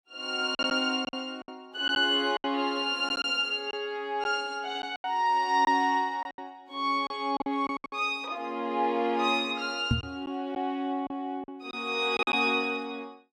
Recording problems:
packet loss; 8% of the sound replaced, filled with silence
knock on the microphone; at 10 s; peak +5 dB vs average level

